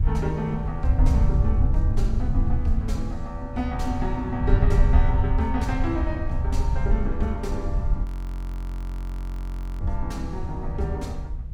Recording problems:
low-frequency rumble; below 78 Hz, SNR -3 dB
wind on the microphone; below 370 Hz, SNR 21 dB
audio freezing; at 8 s for 2 s

